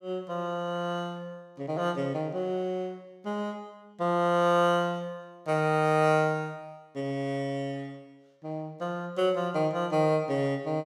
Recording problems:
none

